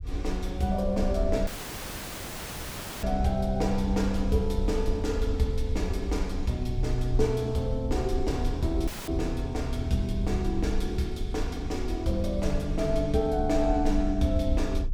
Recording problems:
low-frequency rumble; below 62 Hz, SNR 5 dB
dropout; at 1.5 s for 1.5 s and at 9 s

